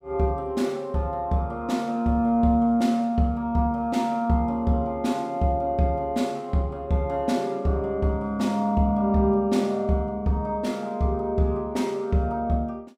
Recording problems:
none

